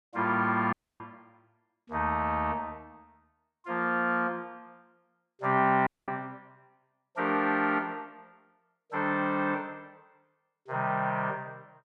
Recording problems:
dropout; at 0.5 s and at 6 s

